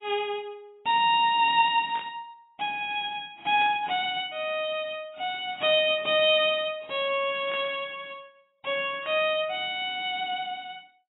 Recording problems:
codec artefacts; AAC, log-spectral distance 3 dB, nothing above 3.4 kHz
burst of static; 4 times, first at 2 s; peak -11 dB vs average level

